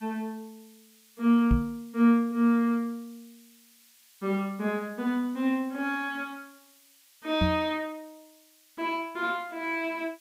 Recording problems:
background hiss; slope +5 dB per octave, SNR 28 dB
knock on the microphone; at 1.5 s and at 7.5 s; peak +6 dB vs average level

